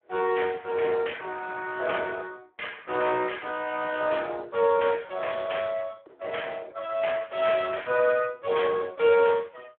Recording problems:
telephone audio; 260 Hz to 3.4 kHz, Speex

